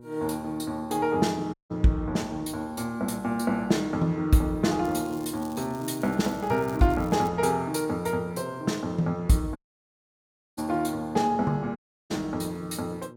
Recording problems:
hum; 60 Hz, harmonics up to 1.1 kHz, SNR 21 dB
dropout; at 1.5 s, at 9.5 s for 1 s and at 12 s
crackling; from 5 to 7.5 s; loose cable, SNR 22 dB

